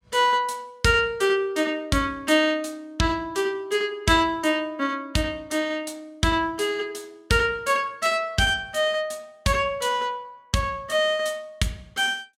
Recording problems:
none

